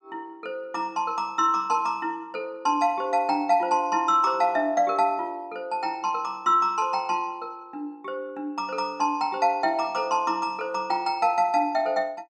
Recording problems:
none

